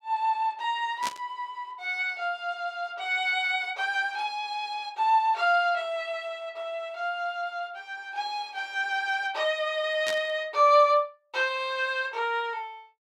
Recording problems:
burst of static; at 1 s and at 10 s; peak -1 dB vs average level

